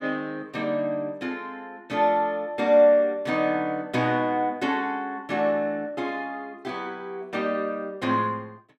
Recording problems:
none

